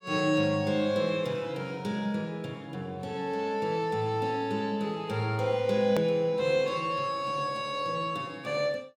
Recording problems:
edit click; at 6 s

